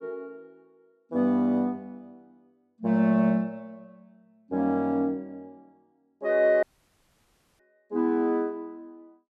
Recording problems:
audio cutting out; at 6.5 s for 1 s

